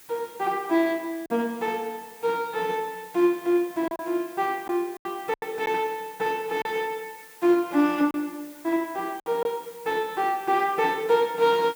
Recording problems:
hiss; slope 0 dB per octave, SNR 21 dB
lost packets; 4% of the sound replaced, filled with silence

